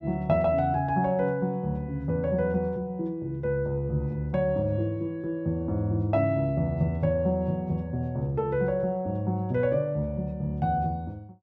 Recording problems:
none

